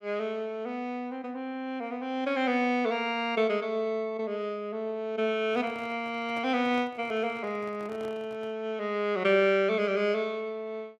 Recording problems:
microphone handling noise; from 5.5 to 8.5 s; peak -12 dB vs average level

